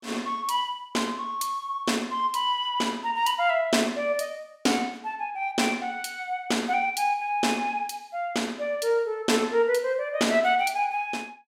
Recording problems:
none

